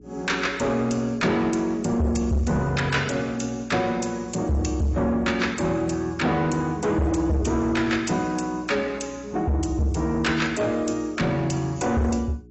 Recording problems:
lossy compression; AAC, log-spectral distance 3 dB, nothing above 7.8 kHz
distortion; soft clipping, signal-to-distortion ratio 7 dB
hum; 60 Hz, harmonics up to 420 Hz, SNR 24 dB

